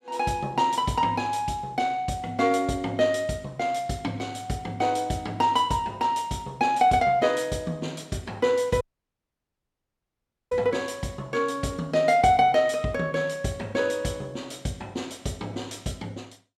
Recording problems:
dropout; at 9 s for 1.5 s

